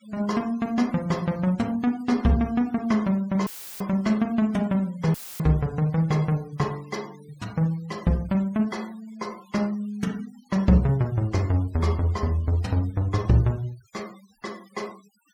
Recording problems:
noise reduction artefacts; signal-to-artefact ratio 25 dB
audio cutting out; at 3.5 s and at 5 s; filled with static

